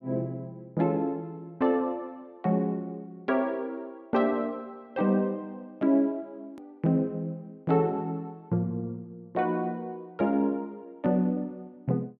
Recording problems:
hard cut with a click; at 6.5 s

